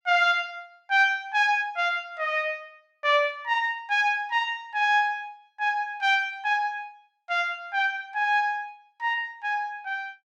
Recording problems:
none

